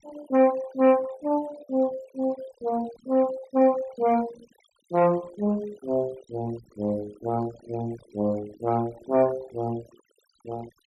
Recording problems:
noise reduction artefacts; signal-to-artefact ratio 21 dB

